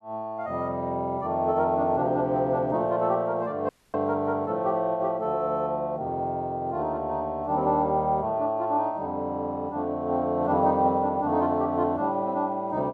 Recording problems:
dropout; at 3.5 s

